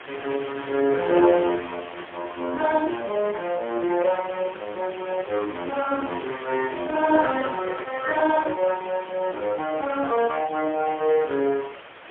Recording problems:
telephone audio; 240 Hz to 3.4 kHz, AMR-NB, then MP3
background hiss; SNR 17 dB
microphone handling noise; from 7 to 8.5 s; peak -4 dB vs average level

